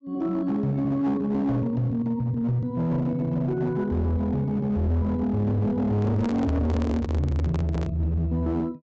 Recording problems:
low-pass filter; nothing above 8 kHz
distorted audio; hard clipping, signal-to-distortion ratio 11 dB
handling noise; from 6 to 8 s; peak -3 dB vs average level

